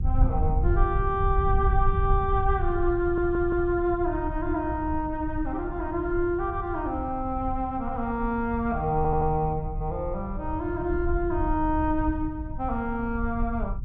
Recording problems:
rumble; below 80 Hz, SNR 4 dB
stutter; at 3 s and at 9 s

